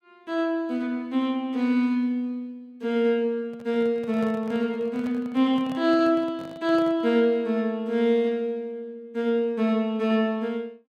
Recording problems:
handling noise; from 3.5 to 7 s; peak -11 dB vs average level

